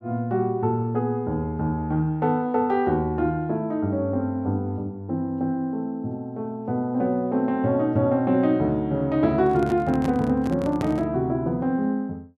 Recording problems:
handling noise; from 9.5 to 11 s; peak -1 dB vs average level

